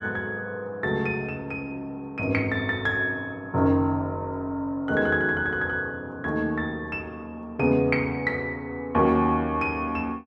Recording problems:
none

